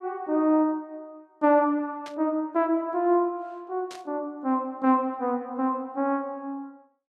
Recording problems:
burst of static; at 2 s and at 4 s; peak -12 dB vs average level

